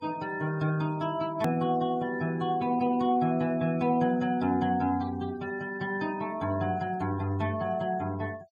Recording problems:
denoising artefacts; signal-to-artefact ratio 23 dB
hard cut with a click; at 1.5 s

